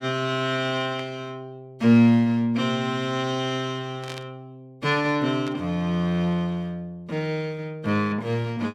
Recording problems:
static burst; at 1 s, at 4 s and at 5.5 s; peak -9 dB vs average level

